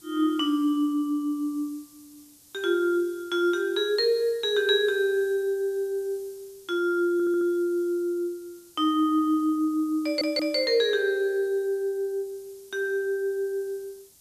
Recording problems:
background hiss; SNR 25 dB
stutter; at 7 s and at 10 s

